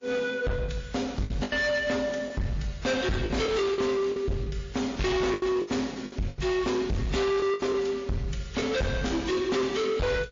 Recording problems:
codec artefacts; MP3, then AAC, log-spectral distance 3 dB, nothing above 6.7 kHz
distortion; hard clipping, signal-to-distortion ratio 6 dB
packet loss; 9% of the sound replaced, filled with the last packet

